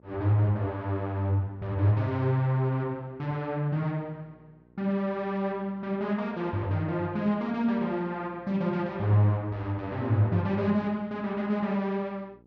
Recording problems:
hum; 60 Hz, harmonics up to 960 Hz, SNR 29 dB

